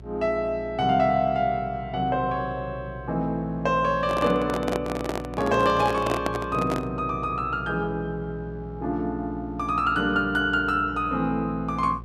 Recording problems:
hum; 60 Hz, harmonics up to 720 Hz, SNR 15 dB
handling noise; from 4 to 7 s; peak +2 dB vs average level

